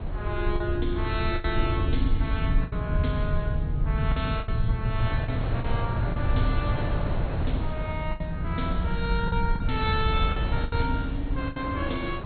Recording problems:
treble missing; nothing above 3.8 kHz
lossy codec; MP2, log-spectral distance 2 dB
rumble; below 98 Hz, SNR -1 dB
wind on the microphone; below 760 Hz, SNR 7 dB
packet loss; 7% of the sound replaced, filled with the last packet

